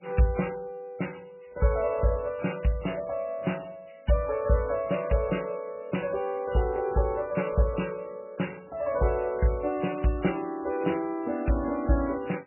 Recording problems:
lossy compression; MP3, log-spectral distance 6 dB, nothing above 2.9 kHz

